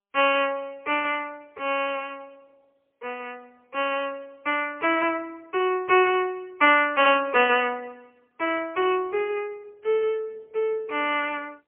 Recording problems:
phone line; 340 Hz to 3.2 kHz, AMR-NB, then MP3

